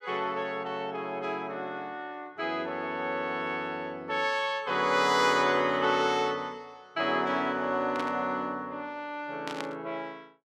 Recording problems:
burst of static; at 8 s and at 9.5 s; peak -4 dB vs average level

